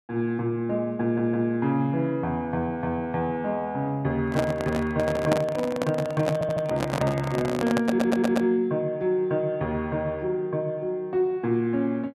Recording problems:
stutter; at 1 s, at 6.5 s and at 8 s
microphone handling noise; from 4 to 8.5 s; peak +4 dB vs average level

